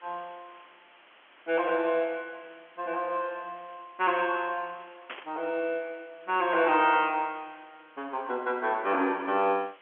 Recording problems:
phone line; 240 Hz to 3.3 kHz, G.711
hiss; SNR 27 dB
burst of static; at 5 s; peak -6 dB vs average level

